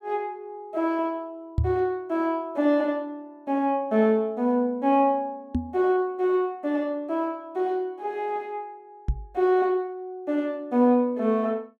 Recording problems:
microphone thump; at 1.5 s, at 5.5 s and at 9 s; peak +4 dB vs average level

